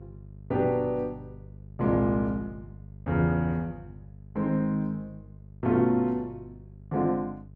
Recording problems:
hum; 50 Hz, harmonics up to 450 Hz, SNR 19 dB

